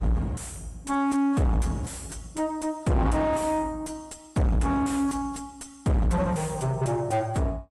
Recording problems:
codec artefacts; AAC, log-spectral distance 2 dB, nothing above 11.3 kHz
distortion; soft clipping, signal-to-distortion ratio 6 dB

